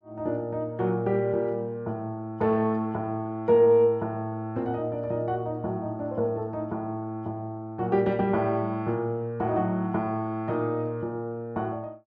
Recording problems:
none

